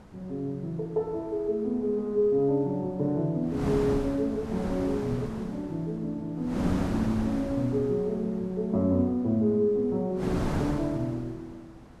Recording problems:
wind on the microphone; below 570 Hz, SNR 7 dB

